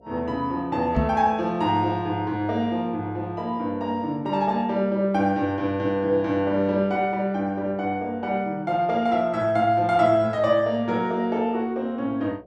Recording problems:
hum; 60 Hz, harmonics up to 720 Hz, SNR 29 dB
microphone thump; at 1 s; peak +2 dB vs average level

